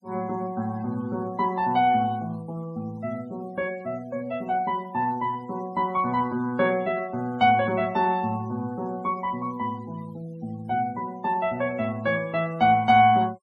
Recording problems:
noise reduction artefacts; signal-to-artefact ratio 25 dB

